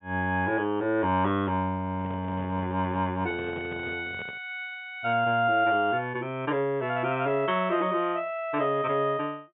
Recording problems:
treble cut off; nothing above 3.5 kHz
microphone handling noise; from 2 to 4.5 s; peak -10 dB vs average level

